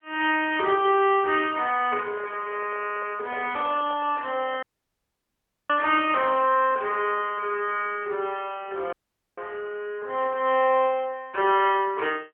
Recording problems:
telephone audio; 320 Hz to 3.3 kHz, AMR-NB
handling noise; from 2 to 4.5 s; peak -11 dB vs average level
audio cutting out; at 4.5 s for 1 s and at 9 s

